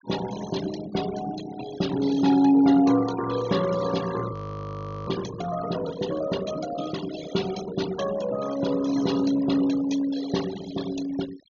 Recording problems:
treble missing; nothing above 6.6 kHz
noise reduction artefacts; signal-to-artefact ratio 14 dB
frozen audio; at 4.5 s for 0.5 s

